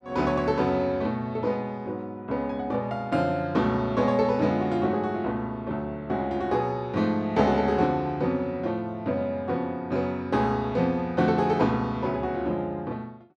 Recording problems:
none

